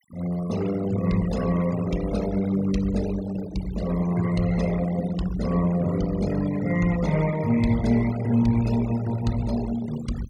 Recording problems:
noise reduction artefacts; signal-to-artefact ratio 16 dB

